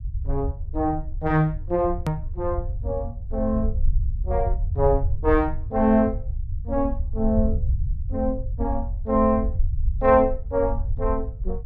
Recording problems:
low-frequency rumble; below 78 Hz, SNR 5 dB
click at an edit; at 2 s

